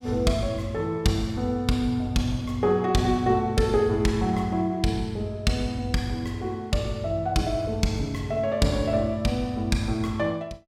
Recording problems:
none

